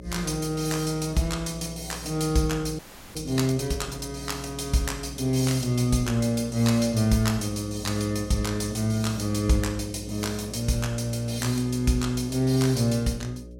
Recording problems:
hum; 60 Hz, harmonics up to 600 Hz, SNR 16 dB
frozen audio; at 3 s

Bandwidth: 16 kHz